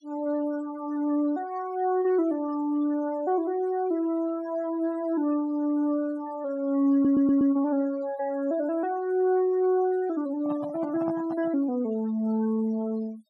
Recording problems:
noise reduction artefacts; signal-to-artefact ratio 23 dB
stutter; at 7 s
handling noise; from 10 to 12 s; peak -6 dB vs average level

